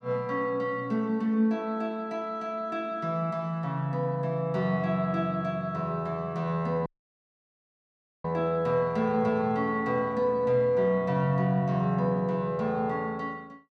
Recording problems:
audio cutting out; at 7 s for 1.5 s

